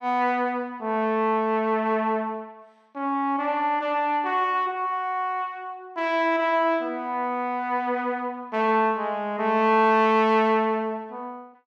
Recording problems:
none

